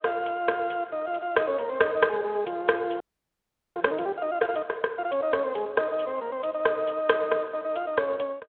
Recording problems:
telephone audio; 300 Hz to 3.6 kHz, Speex
audio freezing; at 3 s for 1 s

